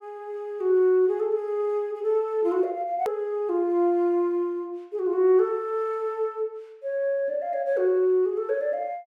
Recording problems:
hard cut with a click; at 3 s

